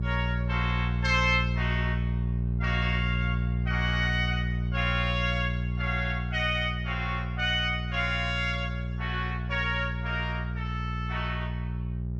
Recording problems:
hum; 60 Hz, harmonics up to 420 Hz, SNR 1 dB

